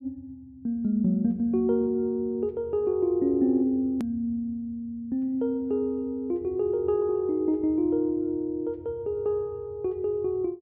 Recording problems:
edit click; at 4 s

